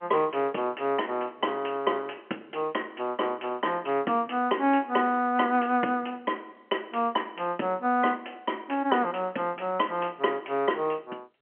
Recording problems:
telephone audio; 220 Hz to 3.2 kHz, G.711

